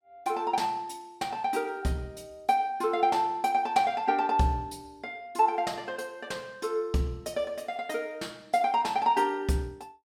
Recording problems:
none

